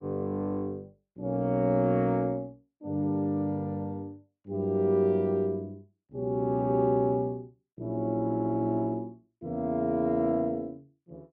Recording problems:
none

